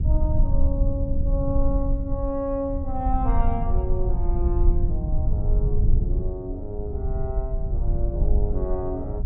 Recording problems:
treble cut off; nothing above 4 kHz
rumble; below 68 Hz, SNR -5 dB

